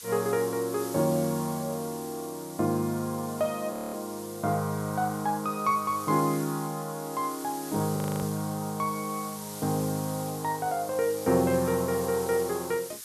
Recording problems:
hiss; slope +3 dB per octave, SNR 12 dB
audio freezing; at 3.5 s and at 8 s

